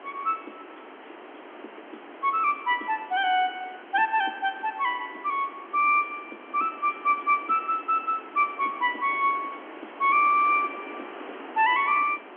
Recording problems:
phone line; 260 Hz to 3.3 kHz, G.711
background hiss; SNR 18 dB

